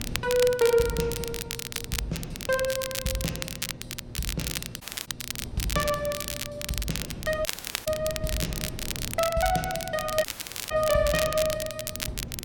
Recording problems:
hum; 60 Hz, harmonics up to 960 Hz, SNR 19 dB
wind on the microphone; below 240 Hz, SNR 14 dB
crackling; vinyl, SNR 5 dB
audio cutting out; at 5 s, at 7.5 s and at 10 s

